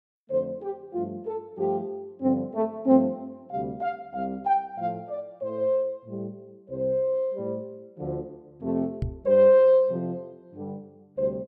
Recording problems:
microphone bump; at 9 s; peak +1 dB vs average level

